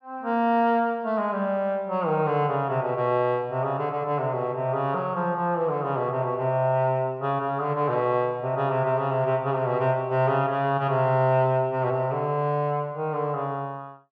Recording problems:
none

